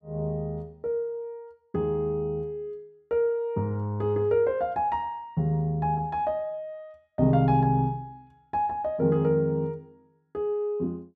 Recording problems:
none

